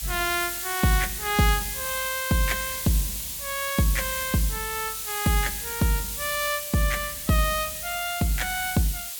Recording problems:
background hiss; SNR 3 dB

